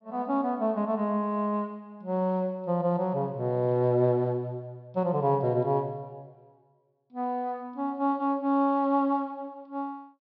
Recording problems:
treble cut off; nothing above 5.5 kHz

